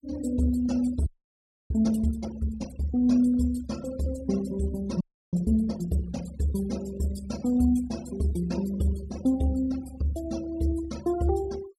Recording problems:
denoising artefacts; signal-to-artefact ratio 19 dB
audio freezing; at 1 s for 0.5 s and at 5 s

